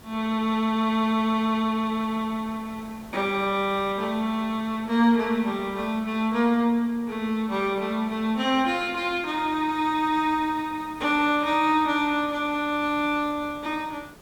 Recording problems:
hiss; slope -5 dB per octave, SNR 22 dB

